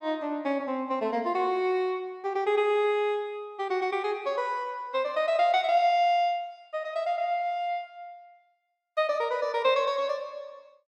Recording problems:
none

